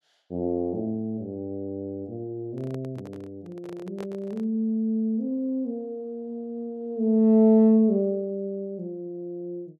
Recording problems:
microphone handling noise; from 2.5 to 4.5 s; peak -11 dB vs average level

